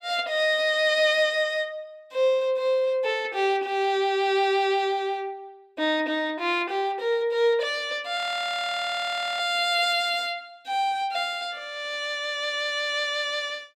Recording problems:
frozen audio; at 8 s for 1 s

